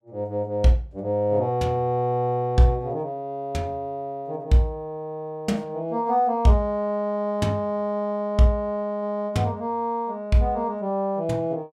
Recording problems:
none

